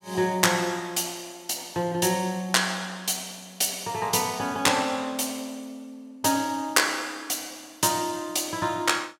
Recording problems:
none

